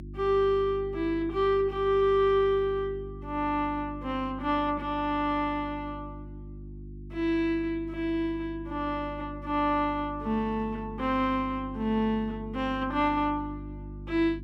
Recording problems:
electrical hum; 50 Hz, harmonics up to 350 Hz, SNR 14 dB

